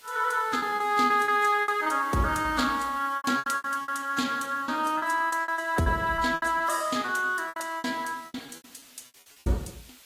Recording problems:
lossy compression; AAC, log-spectral distance 5 dB
background hiss; slope +1 dB per octave, SNR 23 dB
lost packets; 16% of the sound replaced, filled with repeated pitch periods

